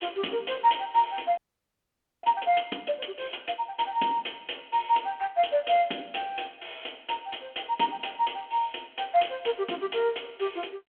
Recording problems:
phone line; 240 Hz to 3.3 kHz, G.726
audio freezing; at 1.5 s for 1 s

